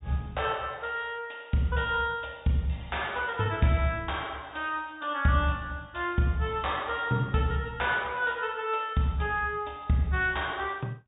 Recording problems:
treble cut off; nothing above 4 kHz

